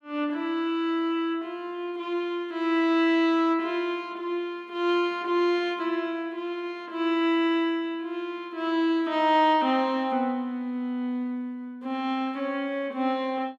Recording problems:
none

